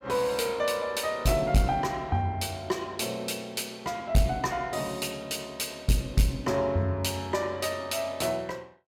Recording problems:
distorted audio; soft clipping, signal-to-distortion ratio 11 dB

